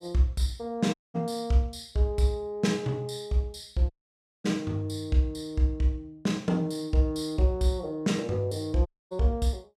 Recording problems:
dropout; at 1 s, at 4 s for 0.5 s and at 9 s

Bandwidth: 14.5 kHz